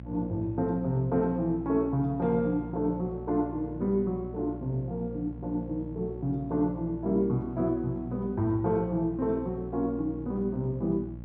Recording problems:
electrical hum; 60 Hz, harmonics up to 600 Hz, SNR 12 dB

